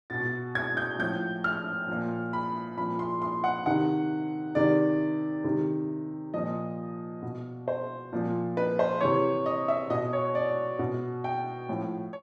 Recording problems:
none

